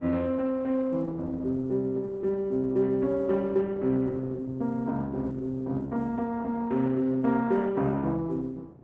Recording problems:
lossy codec; Opus, log-spectral distance 2 dB
wind noise; below 370 Hz, SNR 21 dB

